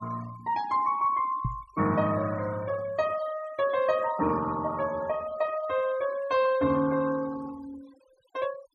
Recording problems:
denoising artefacts; signal-to-artefact ratio 20 dB
knock on the microphone; at 1.5 s; peak +1 dB vs average level

